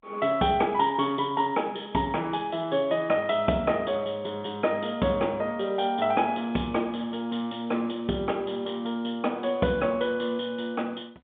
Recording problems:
telephone audio; 190 Hz to 3.5 kHz, G.711

